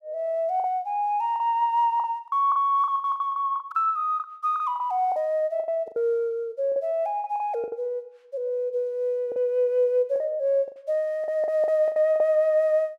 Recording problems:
packet loss; 11% of the sound replaced, filled with the last packet

